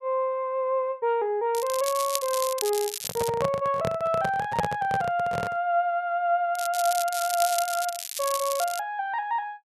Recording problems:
crackle; from 1.5 to 3.5 s and from 6.5 to 9 s; loose cable, SNR 6 dB
microphone handling noise; from 3 to 5.5 s; peak +3 dB vs average level

